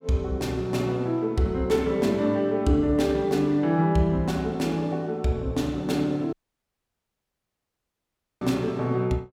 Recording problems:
dropout; at 6.5 s for 2 s

